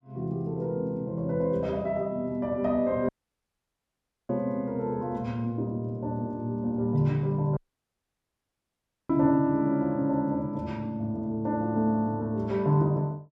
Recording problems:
dropout; at 3 s for 1 s and at 7.5 s for 1.5 s

